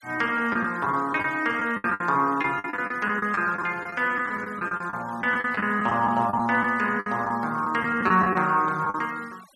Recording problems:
noise reduction artefacts; signal-to-artefact ratio 25 dB
packet loss; 12% of the sound replaced, filled with the last packet

